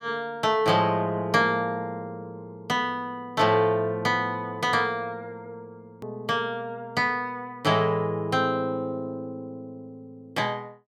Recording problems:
edit click; at 6 s

